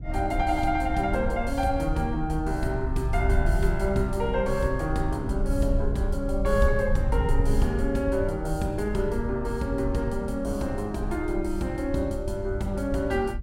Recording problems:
wind on the microphone; below 68 Hz, SNR 4 dB

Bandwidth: 16.5 kHz